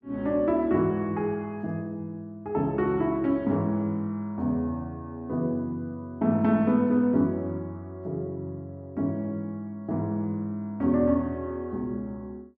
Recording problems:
none

